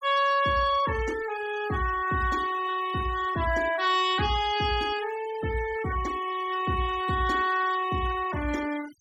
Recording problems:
noise reduction artefacts; signal-to-artefact ratio 15 dB

